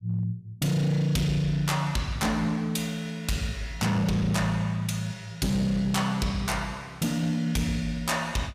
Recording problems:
distorted audio; hard clipping, signal-to-distortion ratio 11 dB

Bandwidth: 15 kHz